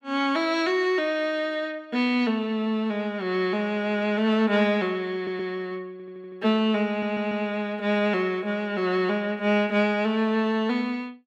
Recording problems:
stutter; at 5 s, at 6 s and at 7 s

